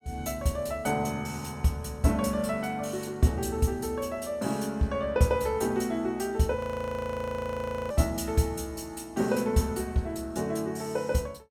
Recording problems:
frozen audio; at 6.5 s for 1.5 s

